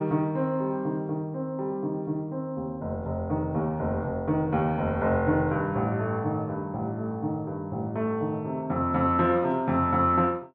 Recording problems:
none

